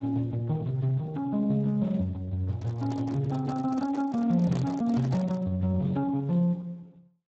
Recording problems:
lossy codec; Speex, log-spectral distance 2 dB
microphone handling noise; from 2.5 to 5.5 s; peak -6 dB vs average level

